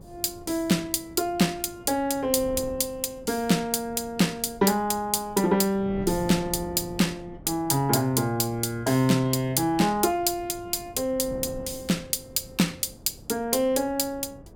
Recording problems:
wind noise; below 320 Hz, SNR 19 dB

